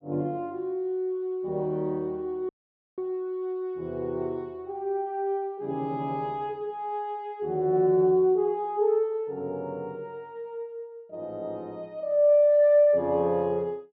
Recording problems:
dropout; at 2.5 s

